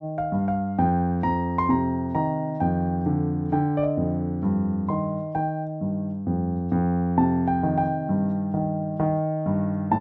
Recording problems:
none

